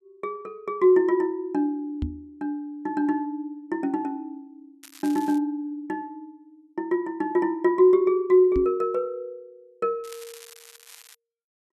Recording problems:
microphone bump; at 2 s and at 8.5 s; peak -1 dB vs average level
crackling; at 5 s and from 10 to 11 s; loose cable, SNR 22 dB

